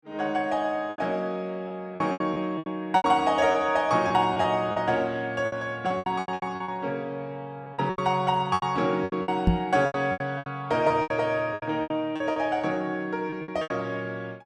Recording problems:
lost packets; 14% of the sound replaced, filled with repeated pitch periods
microphone thump; at 9.5 s; peak +9 dB vs average level

